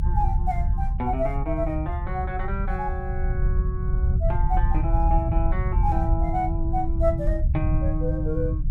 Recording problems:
rumble; below 80 Hz, SNR -3 dB

